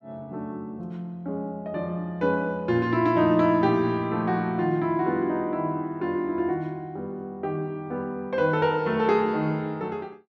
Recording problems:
none

